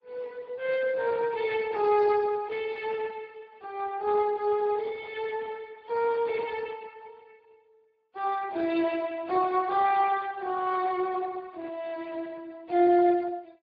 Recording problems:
codec artefacts; Vorbis, then Speex, log-spectral distance 3 dB

